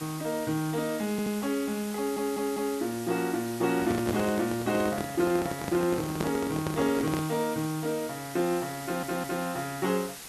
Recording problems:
background hiss; slope -1 dB per octave, SNR 12 dB
stutter; at 1 s, at 2 s and at 9 s
microphone handling noise; from 3.5 to 7.5 s; peak +2 dB vs average level

